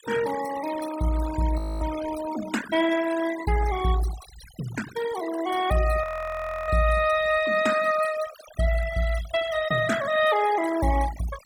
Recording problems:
noise reduction artefacts; signal-to-artefact ratio 13 dB
audio freezing; at 1.5 s and at 6 s for 0.5 s

